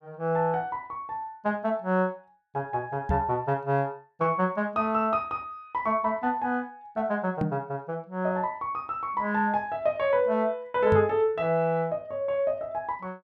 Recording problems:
microphone thump; at 3 s, at 7.5 s and at 11 s; peak +3 dB vs average level

